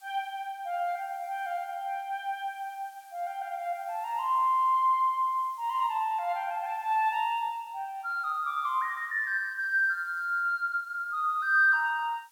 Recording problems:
hiss; SNR 30 dB

